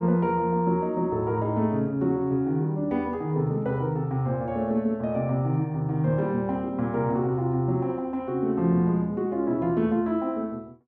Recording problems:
none

